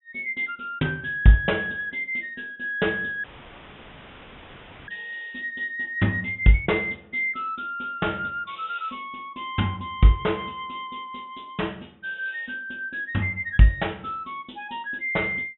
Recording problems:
low-pass filter; nothing above 3.7 kHz
audio cutting out; at 3 s for 1.5 s; filled with static

